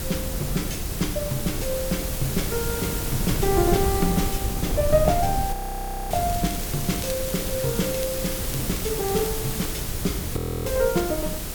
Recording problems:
electrical hum; 50 Hz, harmonics up to 450 Hz, SNR 16 dB
hiss; SNR 3 dB
wind on the microphone; below 130 Hz, SNR 5 dB
frozen audio; at 5.5 s for 0.5 s and at 10 s
crackle; from 6 to 9.5 s; loose cable, SNR 14 dB

